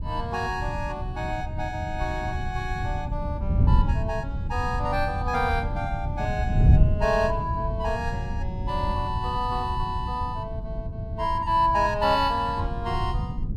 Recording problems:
wind noise; below 130 Hz, SNR 1 dB

